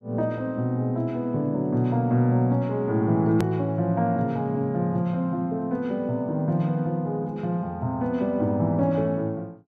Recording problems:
edit click; at 3.5 s

